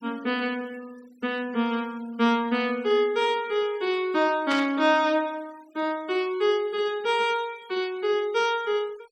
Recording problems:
noise reduction artefacts; signal-to-artefact ratio 25 dB
static burst; at 4.5 s; peak -4 dB vs average level

